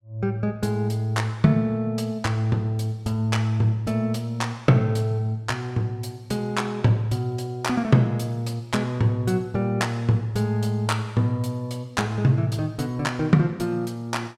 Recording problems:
none

